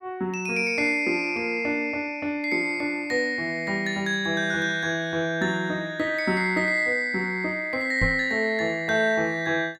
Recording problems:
microphone bump; at 8 s; peak +1 dB vs average level

